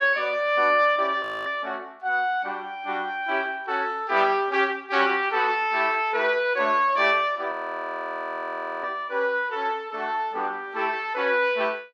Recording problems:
audio freezing; at 1 s and at 7.5 s for 1.5 s

